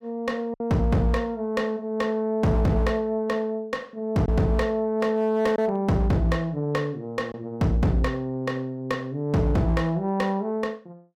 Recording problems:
distortion; hard clipping, uneven, signal-to-distortion ratio 11 dB
lost packets; 1.1% of the sound replaced, filled with silence

